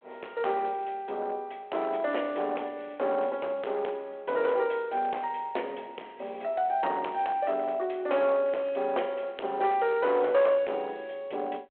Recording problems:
telephone audio; 340 Hz to 3.3 kHz, G.726
distorted audio; hard clipping, uneven, signal-to-distortion ratio 11 dB

